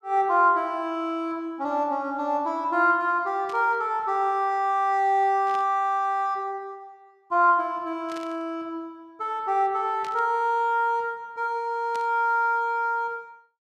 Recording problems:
static burst; 5 times, first at 3.5 s; peak -13 dB vs average level

